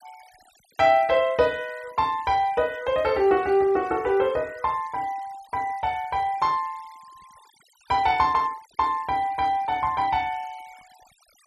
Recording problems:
denoising artefacts; signal-to-artefact ratio 25 dB

